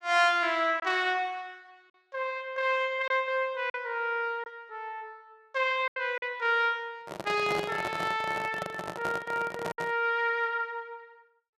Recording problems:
lost packets; 3% of the sound replaced, filled with silence
handling noise; from 7 to 10 s; peak -1 dB vs average level

